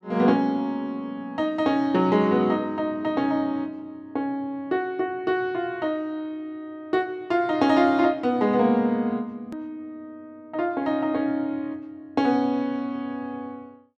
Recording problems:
hard cut with a click; at 9.5 s

